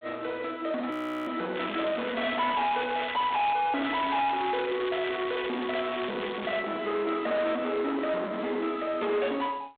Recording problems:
phone line; 300 Hz to 4 kHz, G.726
distortion; soft clipping, signal-to-distortion ratio 6 dB
frozen audio; at 1 s
crackling; from 1.5 to 3.5 s and from 4 to 6.5 s; loose cable, SNR 10 dB
microphone handling noise; from 6.5 to 8.5 s; peak -6 dB vs average level

